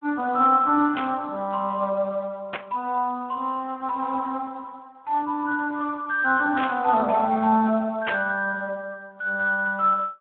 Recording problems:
phone line; 260 Hz to 2.5 kHz, Speex
burst of static; 4 times, first at 1 s; peak -1 dB vs average level

